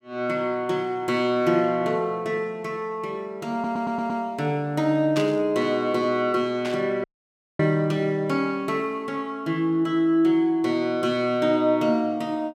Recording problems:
audio stuttering; at 3.5 s
static burst; at 5 s and at 6.5 s; peak -4 dB vs average level
audio cutting out; at 7 s for 0.5 s

